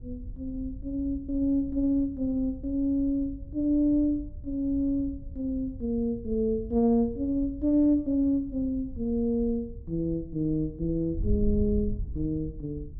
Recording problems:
wind on the microphone; below 80 Hz, SNR 12 dB

